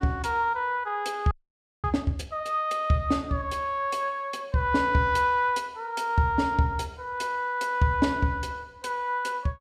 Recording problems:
audio freezing; at 1.5 s for 0.5 s

